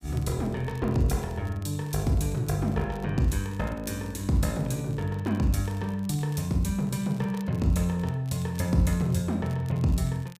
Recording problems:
crackling; vinyl, SNR 27 dB

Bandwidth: 15 kHz